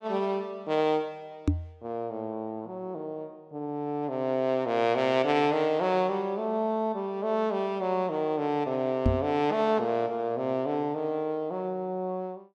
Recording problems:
microphone thump; at 1.5 s and at 9 s; peak +7 dB vs average level

